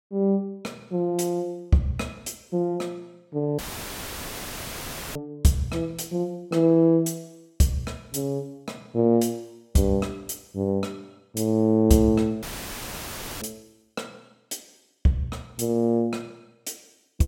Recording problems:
dropout; at 3.5 s for 1.5 s and at 12 s for 1 s; filled with static

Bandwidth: 16.5 kHz